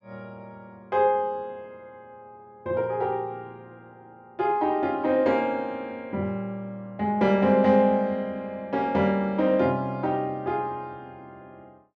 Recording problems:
none

